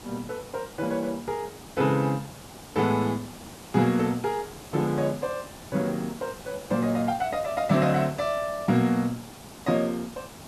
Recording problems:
background hiss; SNR 16 dB

